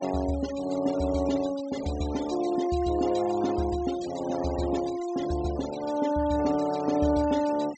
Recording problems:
low-pass filter; nothing above 8 kHz
denoising artefacts; signal-to-artefact ratio 16 dB

